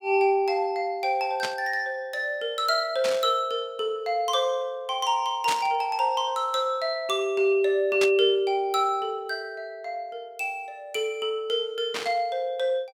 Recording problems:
static burst; 5 times, first at 1.5 s; peak 0 dB vs average level

